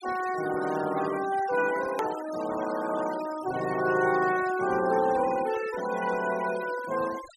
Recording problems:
noise reduction artefacts; signal-to-artefact ratio 14 dB
click at an edit; at 2 s

